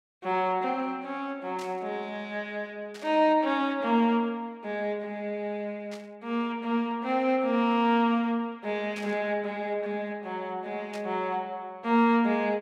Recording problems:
static burst; 5 times, first at 1.5 s; peak -11 dB vs average level

